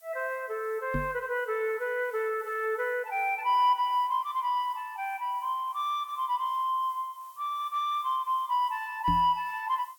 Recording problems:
hiss; slope +2 dB per octave, SNR 27 dB
microphone thump; at 1 s and at 9 s; peak +1 dB vs average level

